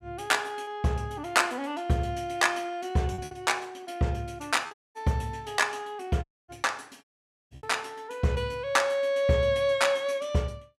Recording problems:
packet loss; 3% of the sound replaced, filled with repeated pitch periods
dropout; at 4.5 s, at 6 s and at 7 s

